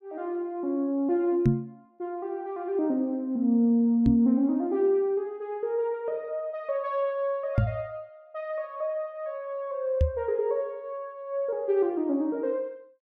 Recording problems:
microphone bump; 4 times, first at 1.5 s; peak +9 dB vs average level

